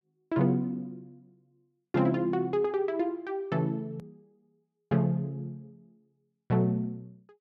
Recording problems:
edit click; at 4 s

